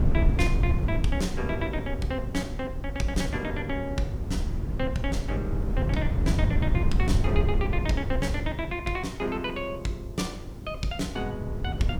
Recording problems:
hiss; SNR 26 dB
wind on the microphone; below 120 Hz, SNR -2 dB

